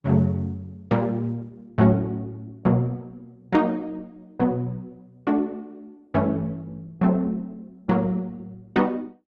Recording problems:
lossy codec; Opus, log-spectral distance 2 dB

